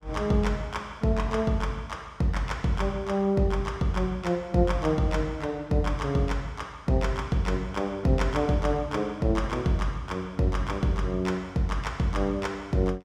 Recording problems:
none

